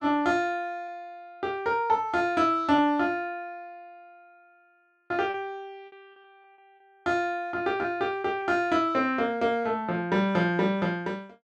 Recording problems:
packet loss; 2% of the sound replaced, filled with repeated pitch periods

